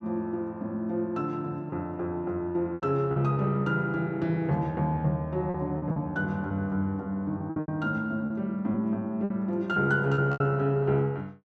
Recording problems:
packet loss; 7% of the sound replaced, filled with repeated pitch periods

